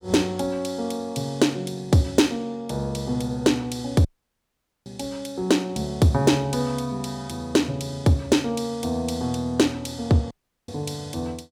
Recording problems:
audio cutting out; at 4 s for 1 s and at 10 s

